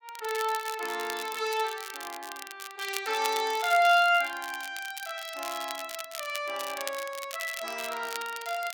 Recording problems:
crackle; vinyl, SNR 11 dB

